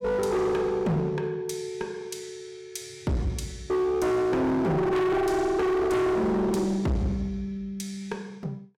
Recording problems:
distorted audio; hard clipping, uneven, signal-to-distortion ratio 6 dB

